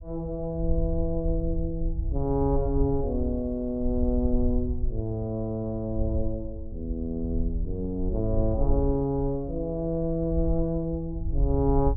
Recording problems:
rumble; below 66 Hz, SNR 4 dB

